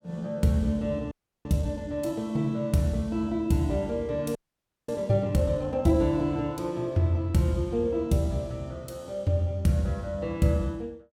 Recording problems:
audio freezing; at 1 s and at 4.5 s for 0.5 s

